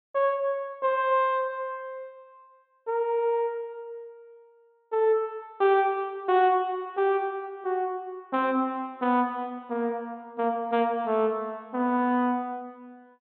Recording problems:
treble missing; nothing above 4 kHz

